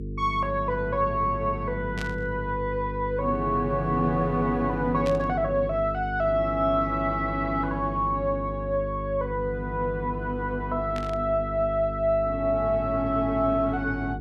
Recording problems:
electrical hum; 50 Hz, harmonics up to 450 Hz, SNR 8 dB
static burst; at 2 s, at 5 s and at 11 s; peak -7 dB vs average level

